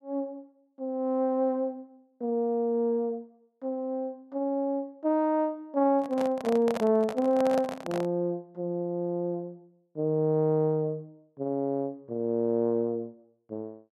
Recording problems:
handling noise; from 6 to 8 s; peak 0 dB vs average level

